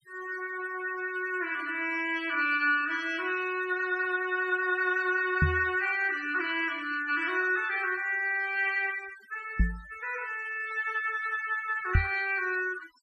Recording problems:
noise reduction artefacts; signal-to-artefact ratio 17 dB
knock on the microphone; at 5.5 s, at 9.5 s and at 12 s; peak +8 dB vs average level

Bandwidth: 13.5 kHz